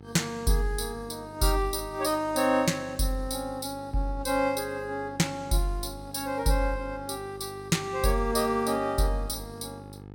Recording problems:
mains hum; 50 Hz, harmonics up to 1.4 kHz, SNR 17 dB

